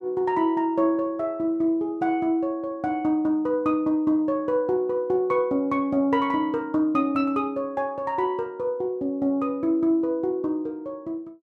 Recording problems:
none

